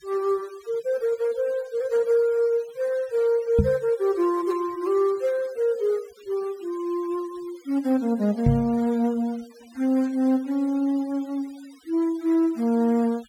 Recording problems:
denoising artefacts; signal-to-artefact ratio 24 dB
knock on the microphone; at 3.5 s and at 8.5 s; peak +7 dB vs average level

